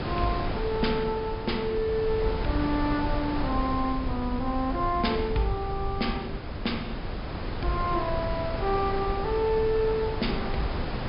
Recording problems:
low-pass filter; nothing above 5.5 kHz
mains hum; 50 Hz, harmonics up to 400 Hz, SNR 17 dB
low-frequency rumble; below 68 Hz, SNR 10 dB
wind noise; below 940 Hz, SNR 6 dB

